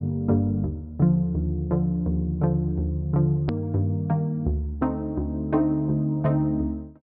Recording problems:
treble cut off; nothing above 5.5 kHz
click at an edit; at 3.5 s

